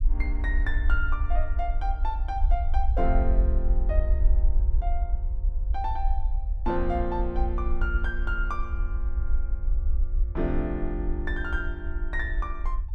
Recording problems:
low-frequency rumble; below 56 Hz, SNR -4 dB

